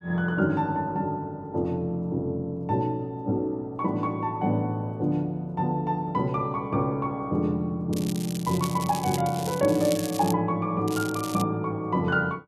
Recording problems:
crackle; from 8 to 10 s and at 11 s; loose cable, SNR 11 dB

